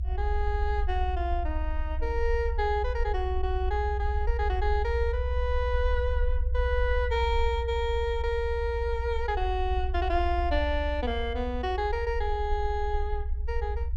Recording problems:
rumble; below 62 Hz, SNR 1 dB

